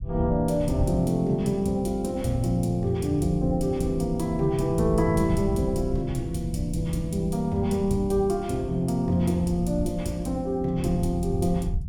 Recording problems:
rumble; below 120 Hz, SNR 9 dB

